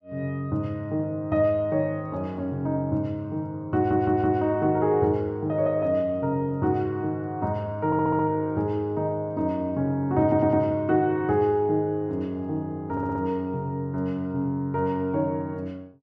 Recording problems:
audio stuttering; 4 times, first at 3.5 s

